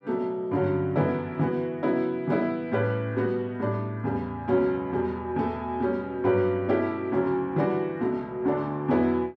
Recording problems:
none

